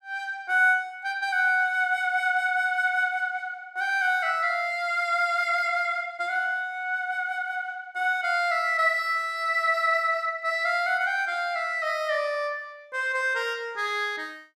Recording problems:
none

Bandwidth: 13.5 kHz